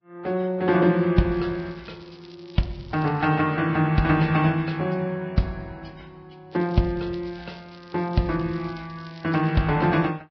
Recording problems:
codec artefacts; Vorbis, log-spectral distance 4 dB, nothing above 5.2 kHz
crackling; from 1.5 to 3.5 s and from 6.5 to 9.5 s; loose cable, SNR 28 dB

